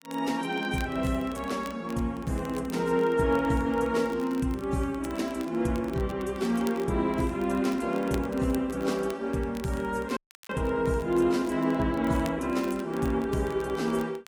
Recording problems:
lossy codec; AAC, log-spectral distance 2 dB
crackle; vinyl, SNR 22 dB
audio cutting out; at 10 s

